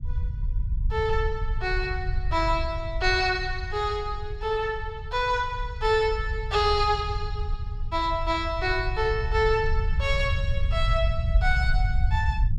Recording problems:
rumble; below 76 Hz, SNR 4 dB

